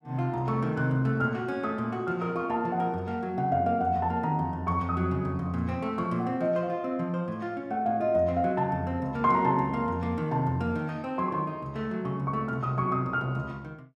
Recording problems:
none

